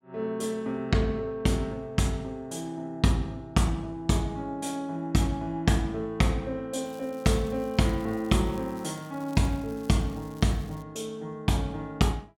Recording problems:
crackling; from 7 to 11 s; loose cable, SNR 25 dB

